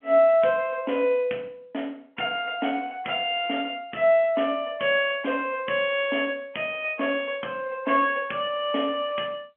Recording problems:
telephone audio; 190 Hz to 3.3 kHz, G.711

